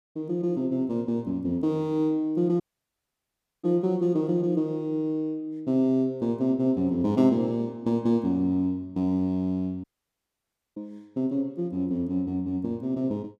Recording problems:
audio cutting out; at 2.5 s for 1 s and at 10 s for 1 s

